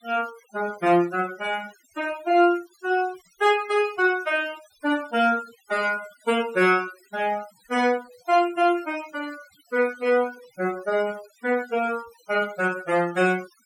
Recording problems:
denoising artefacts; signal-to-artefact ratio 20 dB

